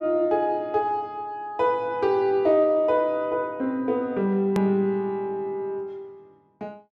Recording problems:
click at an edit; at 4.5 s

